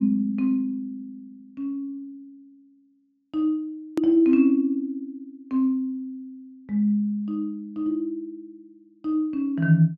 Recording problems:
treble cut off; nothing above 8 kHz
edit click; at 4 s

